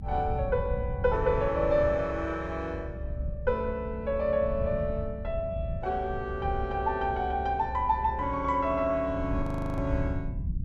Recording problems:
low-frequency rumble; below 110 Hz, SNR 7 dB
frozen audio; at 9.5 s

